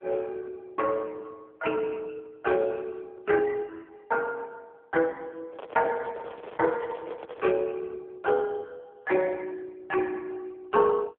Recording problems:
phone line; 300 Hz to 2.6 kHz, AMR-NB
microphone handling noise; from 5.5 to 7.5 s; peak -6 dB vs average level

